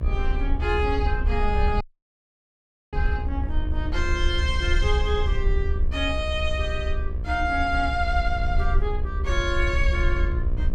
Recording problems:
electrical hum; 60 Hz, harmonics up to 1.7 kHz, SNR 12 dB
rumble; below 70 Hz, SNR 2 dB
wind noise; below 66 Hz, SNR 3 dB
audio cutting out; at 2 s for 1 s

